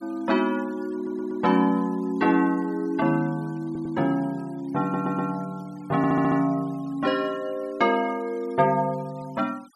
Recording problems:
noise reduction artefacts; signal-to-artefact ratio 26 dB
stutter; 4 times, first at 1 s

